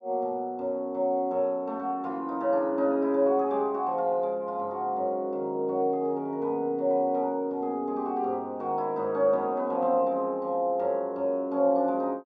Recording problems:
none

